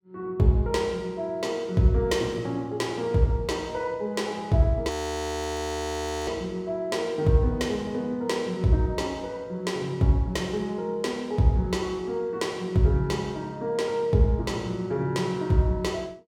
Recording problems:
audio freezing; at 5 s for 1.5 s

